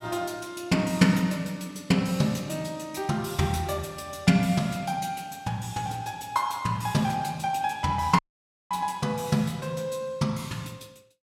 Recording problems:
audio cutting out; at 8 s for 0.5 s

